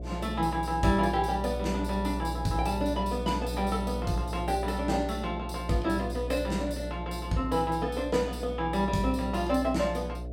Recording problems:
hum; 60 Hz, harmonics up to 720 Hz, SNR 7 dB

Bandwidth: 16 kHz